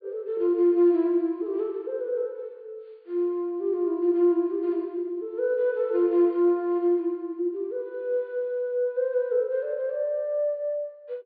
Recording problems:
treble cut off; nothing above 4.7 kHz

